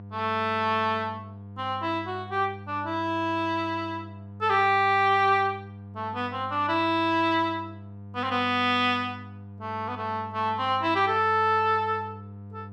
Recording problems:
electrical hum; 50 Hz, harmonics up to 900 Hz, SNR 17 dB

